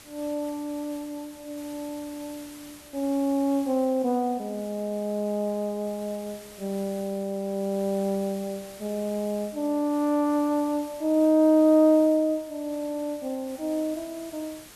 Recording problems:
hiss; slope -1 dB per octave, SNR 20 dB

